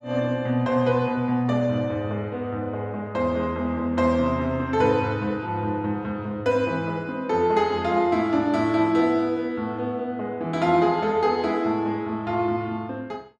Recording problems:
none

